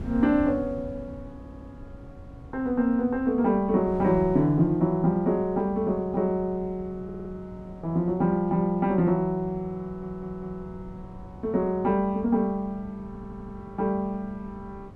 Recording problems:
wind on the microphone; below 220 Hz, SNR 18 dB
stutter; 4 times, first at 1.5 s

